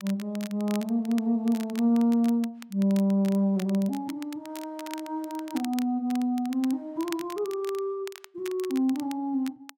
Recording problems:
crackle; vinyl, SNR 18 dB

